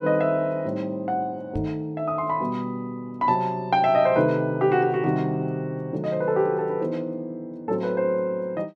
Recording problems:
knock on the microphone; at 1.5 s; peak -3 dB vs average level

